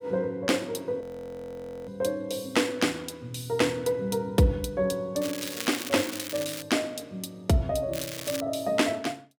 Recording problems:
frozen audio; at 1 s for 1 s
crackling; from 5 to 6.5 s and at 8 s; loose cable, SNR 7 dB

